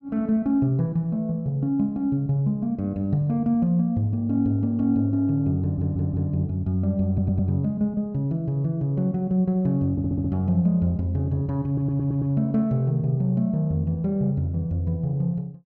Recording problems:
stutter; 4 times, first at 5.5 s

